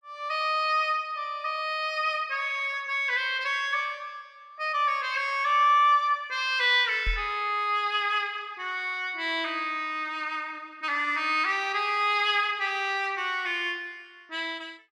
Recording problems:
microphone bump; at 7 s; peak -2 dB vs average level

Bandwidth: 13.5 kHz